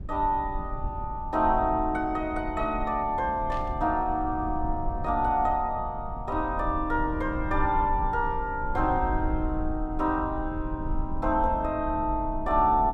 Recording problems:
rumble; below 72 Hz, SNR 9 dB
static burst; at 3.5 s; peak -15 dB vs average level

